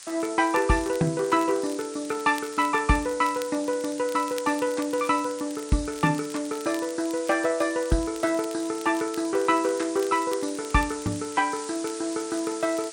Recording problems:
codec artefacts; MP3, log-spectral distance 10 dB
hiss; slope +3 dB per octave, SNR 14 dB
crackle; vinyl, SNR 21 dB

